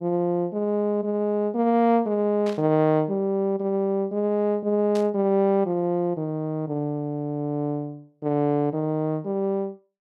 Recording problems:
static burst; at 2.5 s and at 5 s; peak -11 dB vs average level

